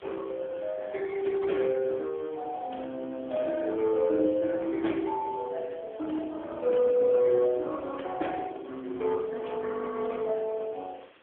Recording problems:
phone line; 260 Hz to 2.1 kHz, AMR-NB
background hiss; SNR 27 dB

